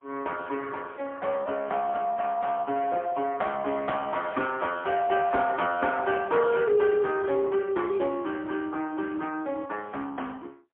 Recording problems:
phone line; 220 Hz to 3.3 kHz, AMR-NB, then MP3

